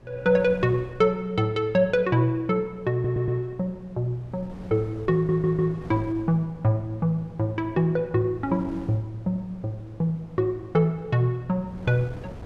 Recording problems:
wind on the microphone; below 380 Hz, SNR 20 dB
stutter; at 3 s and at 5 s

